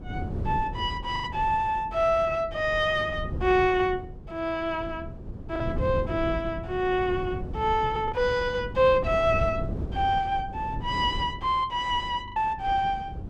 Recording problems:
wind noise; below 200 Hz, SNR 10 dB
packet loss; 2% of the sound replaced, filled with the last packet

